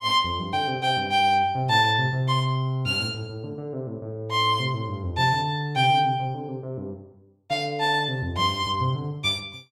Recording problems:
none

